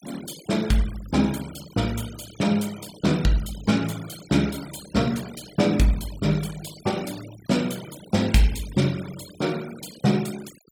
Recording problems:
noise reduction artefacts; signal-to-artefact ratio 17 dB

